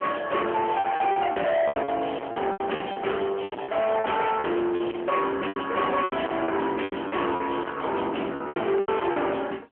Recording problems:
phone line; 280 Hz to 3.2 kHz, AMR-NB
distortion; soft clipping, signal-to-distortion ratio 5 dB
lost packets; 14% of the sound replaced, filled with repeated pitch periods

